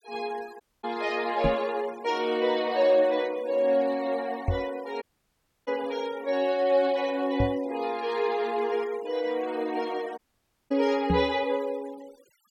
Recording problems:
denoising artefacts; signal-to-artefact ratio 21 dB
audio cutting out; at 0.5 s, at 5 s for 0.5 s and at 10 s for 0.5 s
microphone bump; 4 times, first at 1.5 s; peak +4 dB vs average level

